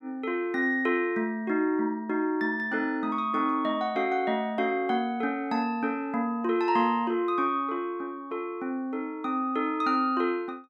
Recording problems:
none

